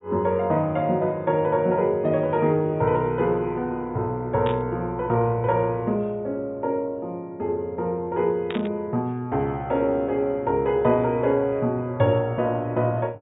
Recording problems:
treble missing; nothing above 4 kHz
static burst; at 4.5 s and at 8.5 s; peak -6 dB vs average level

